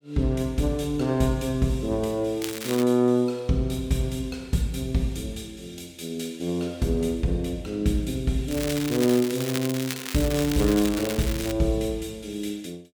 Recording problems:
crackle; at 2.5 s and from 8.5 to 12 s; loose cable, SNR 8 dB

